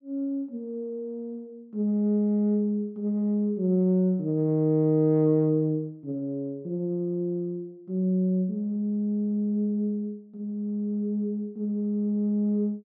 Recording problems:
none

